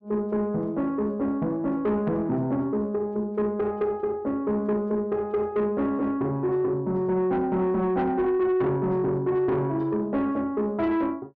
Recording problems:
distortion; soft clipping, signal-to-distortion ratio 11 dB

